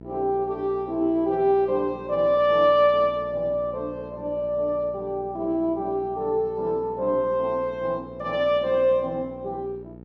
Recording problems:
mains hum; 60 Hz, harmonics up to 900 Hz, SNR 19 dB

